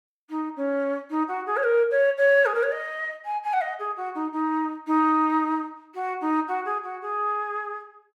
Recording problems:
none

